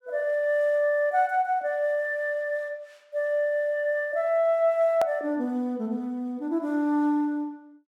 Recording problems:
edit click; at 5 s

